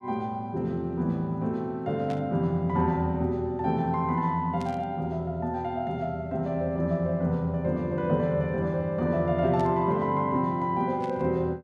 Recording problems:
static burst; 4 times, first at 2 s; peak -13 dB vs average level

